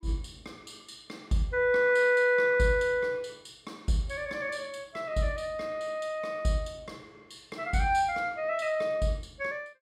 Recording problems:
none

